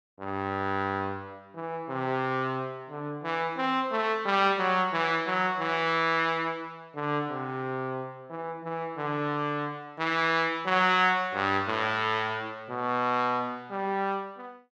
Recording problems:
none

